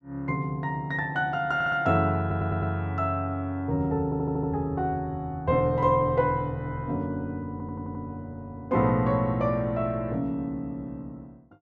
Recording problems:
stutter; 4 times, first at 1.5 s

